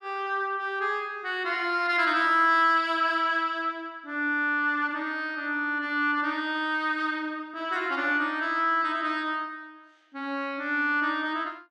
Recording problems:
none

